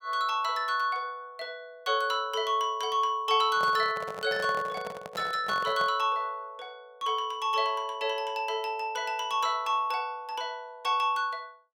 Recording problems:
microphone handling noise; from 3.5 to 6 s; peak -5 dB vs average level

